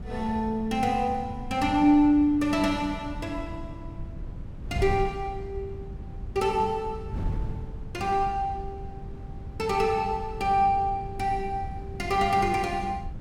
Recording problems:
wind noise; below 130 Hz, SNR 12 dB

